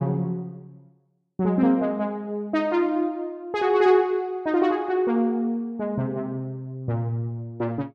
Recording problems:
none

